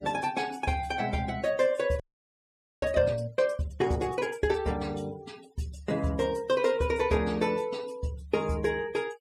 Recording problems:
noise reduction artefacts; signal-to-artefact ratio 22 dB
audio freezing; at 2 s for 1 s

